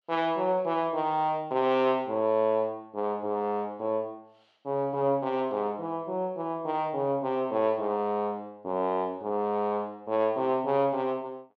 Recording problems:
none

